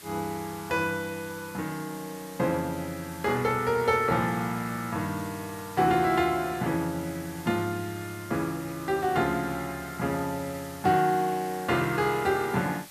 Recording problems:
background hiss; slope 0 dB per octave, SNR 17 dB

